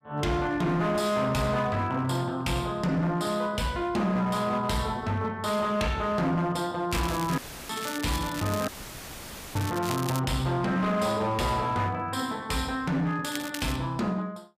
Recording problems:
distortion; hard clipping, signal-to-distortion ratio 11 dB
crackling; from 7 to 10 s and at 13 s; loose cable, SNR 11 dB
dropout; at 7.5 s and at 8.5 s for 1 s; filled with static

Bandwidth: 15 kHz